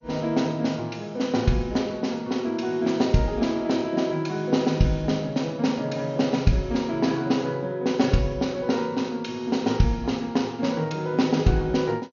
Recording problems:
lossy compression; MP2, log-spectral distance 2 dB, nothing above 6.7 kHz

